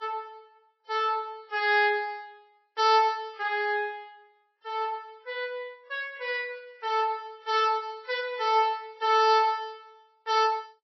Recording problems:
lossy codec; Vorbis, then MP3, log-spectral distance 2 dB, nothing above 4.9 kHz

